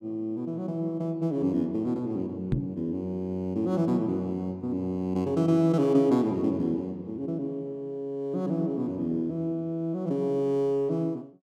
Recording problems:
microphone thump; at 2.5 s; peak +5 dB vs average level

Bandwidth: 13.5 kHz